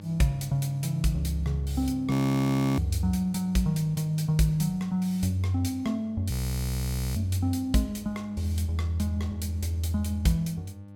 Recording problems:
hum; 50 Hz, harmonics up to 900 Hz, SNR 17 dB
audio freezing; at 2 s for 0.5 s and at 6.5 s for 1 s

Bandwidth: 17 kHz